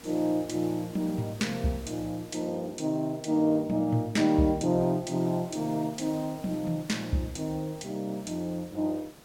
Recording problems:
hiss; slope -4 dB per octave, SNR 20 dB

